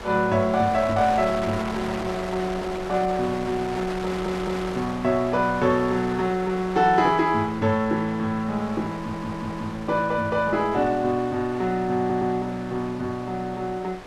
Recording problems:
wind on the microphone; below 2 kHz, SNR 12 dB
audio stuttering; at 4 s, at 9 s and at 12 s

